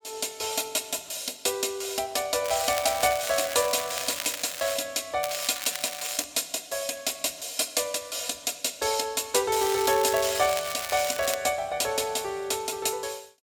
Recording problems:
crackle; from 2.5 to 5 s, from 5 to 6 s and from 9.5 to 11 s; loose cable, SNR 8 dB

